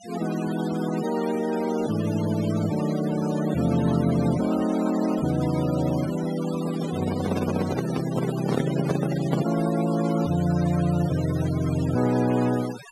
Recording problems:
noise reduction artefacts; signal-to-artefact ratio 13 dB
microphone handling noise; from 6.5 to 9.5 s; peak +2 dB vs average level

